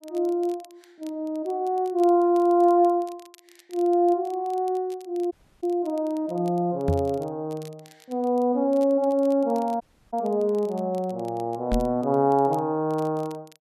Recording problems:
crackle; vinyl, SNR 29 dB
dropout; at 5.5 s and at 10 s
knock on the microphone; at 7 s and at 12 s; peak +3 dB vs average level

